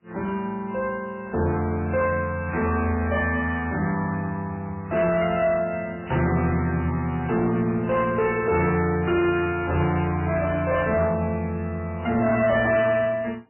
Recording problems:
lossy codec; MP3, log-spectral distance 3 dB, nothing above 2.4 kHz
distorted audio; soft clipping, signal-to-distortion ratio 12 dB

